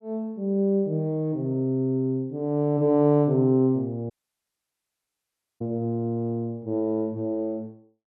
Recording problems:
dropout; at 4 s for 1.5 s

